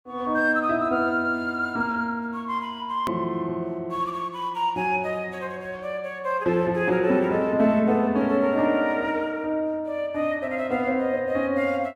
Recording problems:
click at an edit; at 3 s

